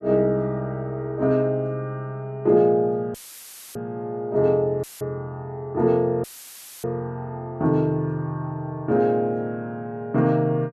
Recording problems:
dropout; at 3 s for 0.5 s, at 5 s and at 6 s for 0.5 s; filled with static

